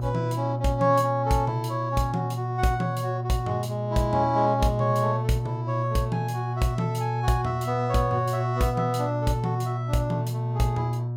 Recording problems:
hum; 60 Hz, harmonics up to 720 Hz, SNR 3 dB

